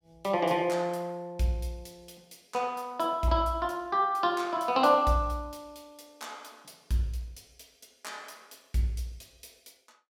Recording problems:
none

